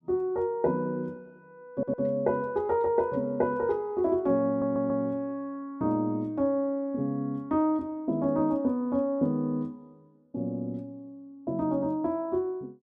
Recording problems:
audio stuttering; at 1.5 s and at 4.5 s

